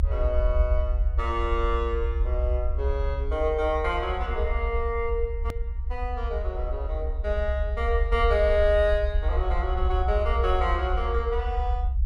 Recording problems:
rumble; below 66 Hz, SNR 1 dB
edit click; at 5.5 s

